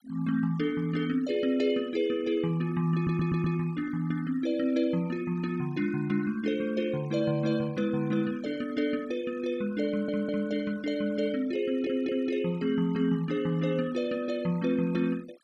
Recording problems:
denoising artefacts; signal-to-artefact ratio 24 dB
stutter; at 3 s, at 10 s and at 12 s

